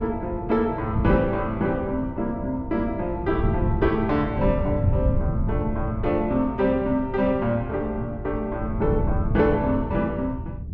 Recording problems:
wind noise; below 140 Hz, SNR 5 dB

